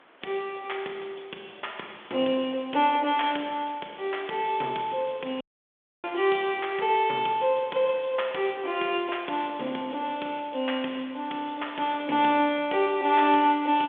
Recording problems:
telephone audio; 220 Hz to 3.5 kHz, G.726
background hiss; SNR 27 dB
dropout; at 5.5 s for 0.5 s

